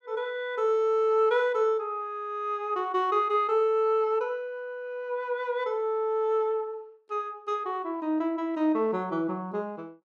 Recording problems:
none

